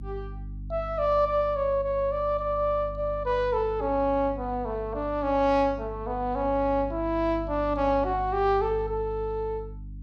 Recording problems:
electrical hum; 50 Hz, harmonics up to 300 Hz, SNR 13 dB

